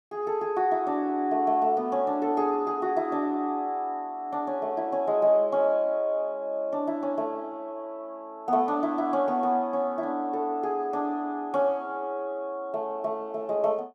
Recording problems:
none

